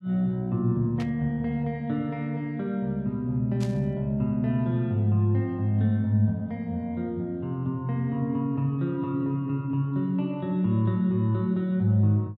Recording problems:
burst of static; at 1 s and at 3.5 s; peak -11 dB vs average level

